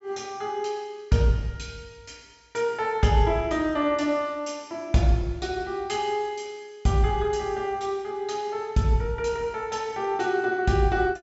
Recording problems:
treble missing; nothing above 8 kHz

